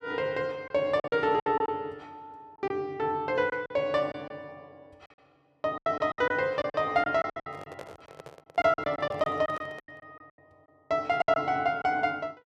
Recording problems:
lost packets; 11% of the sound replaced, filled with silence
microphone handling noise; from 7.5 to 10 s; peak -9 dB vs average level

